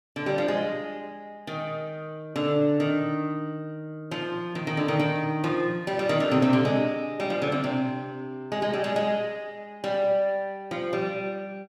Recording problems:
none

